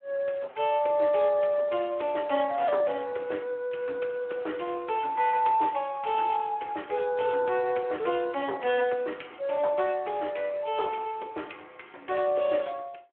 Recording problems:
telephone audio; 280 Hz to 3.3 kHz, Speex

